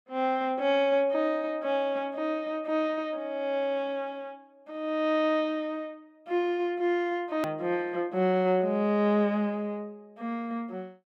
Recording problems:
edit click; at 7.5 s

